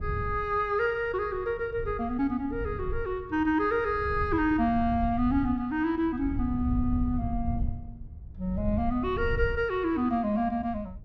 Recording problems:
wind noise; below 98 Hz, SNR 9 dB

